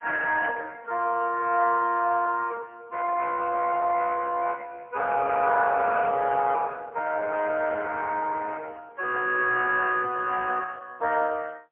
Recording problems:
telephone audio; 320 Hz to 2.8 kHz, AMR-NB, then MP3

